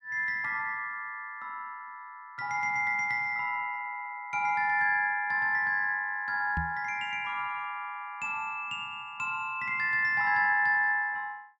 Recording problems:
microphone thump; at 6.5 s; peak -2 dB vs average level

